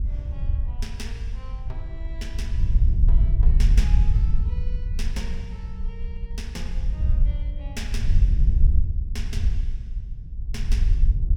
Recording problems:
wind noise; below 62 Hz, SNR -15 dB

